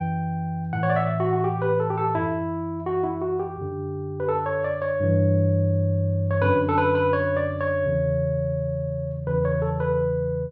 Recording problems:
none

